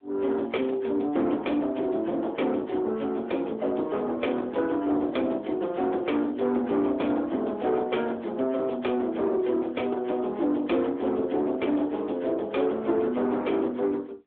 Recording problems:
phone line; 220 Hz to 3.5 kHz, AMR-NB
distortion; soft clipping, signal-to-distortion ratio 12 dB

